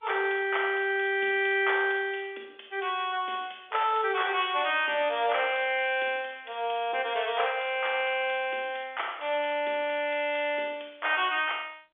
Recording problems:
phone line; 320 Hz to 3.5 kHz, G.711

